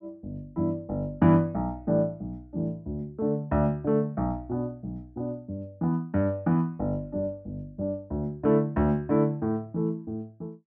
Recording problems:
none

